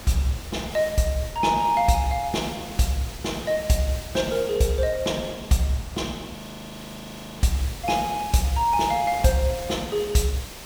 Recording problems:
background hiss; SNR 16 dB
wind on the microphone; below 1.1 kHz, SNR 20 dB
frozen audio; at 6.5 s for 1 s

